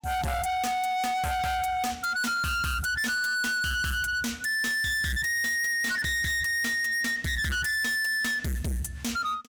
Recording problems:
distortion; hard clipping, signal-to-distortion ratio 6 dB

